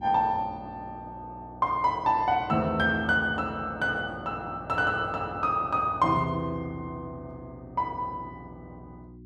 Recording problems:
electrical hum; 60 Hz, harmonics up to 360 Hz, SNR 19 dB

